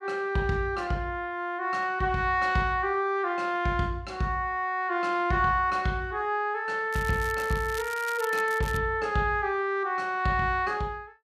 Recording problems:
crackling; from 7 to 9 s; loose cable, SNR 15 dB

